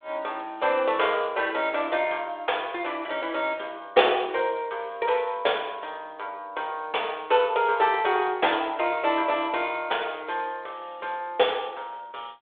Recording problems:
phone line; 340 Hz to 3.6 kHz, G.726

